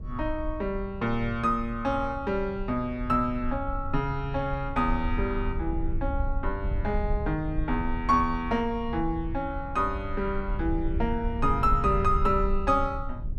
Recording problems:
rumble; below 68 Hz, SNR 6 dB

